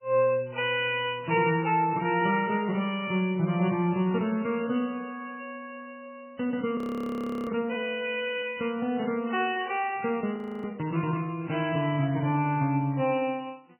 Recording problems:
lossy compression; MP3, log-spectral distance 4 dB, nothing above 2.4 kHz
audio freezing; at 7 s for 0.5 s and at 10 s

